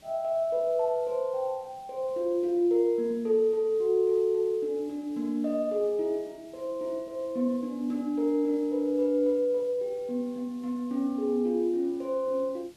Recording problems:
background hiss; SNR 29 dB

